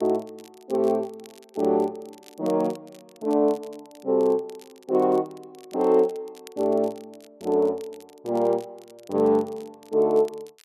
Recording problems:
crackle; vinyl, SNR 28 dB

